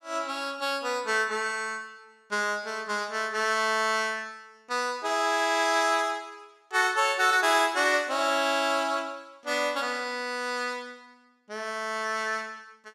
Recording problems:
none

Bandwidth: 15 kHz